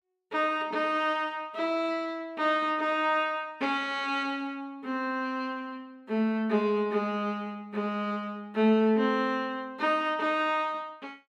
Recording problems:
none

